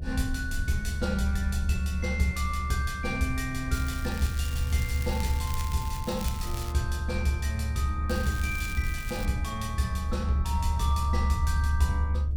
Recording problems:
hum; 60 Hz, harmonics up to 660 Hz, SNR 21 dB
low-frequency rumble; below 74 Hz, strongest tone 72 Hz, SNR 0 dB
crackle; from 3.5 to 6 s, at 6 s and from 8 to 9.5 s; loose cable, SNR 11 dB

